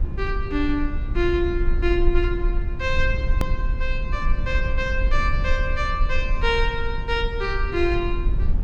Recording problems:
hum; 60 Hz, harmonics up to 1.3 kHz, SNR 22 dB
rumble; below 56 Hz, strongest tone 22 Hz, SNR 1 dB
hard cut with a click; at 3.5 s

